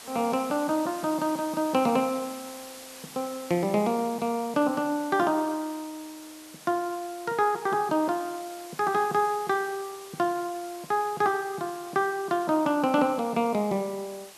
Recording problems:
hiss; slope -1 dB per octave, SNR 17 dB

